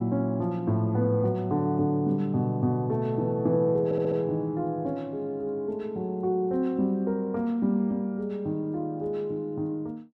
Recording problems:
stutter; at 4 s

